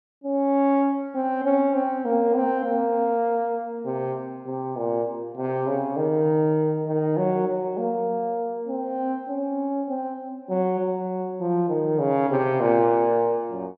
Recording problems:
low-pass filter; nothing above 8 kHz

